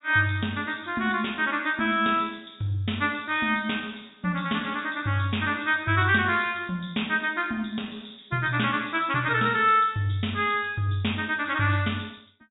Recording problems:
treble missing; nothing above 4 kHz

